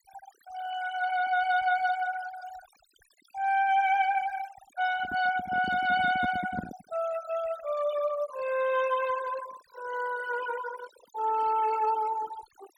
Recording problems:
denoising artefacts; signal-to-artefact ratio 15 dB
microphone handling noise; from 5 to 7 s; peak -2 dB vs average level

